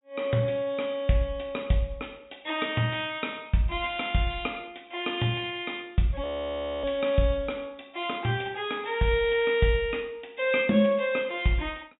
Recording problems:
low-pass filter; nothing above 4 kHz
audio freezing; at 6 s for 0.5 s

